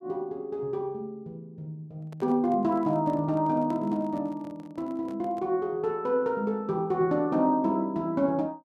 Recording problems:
microphone handling noise; from 2 to 5.5 s; peak -12 dB vs average level

